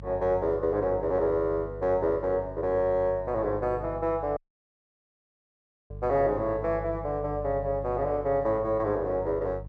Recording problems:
electrical hum; 50 Hz, harmonics up to 350 Hz, SNR 14 dB
dropout; at 4.5 s for 1.5 s

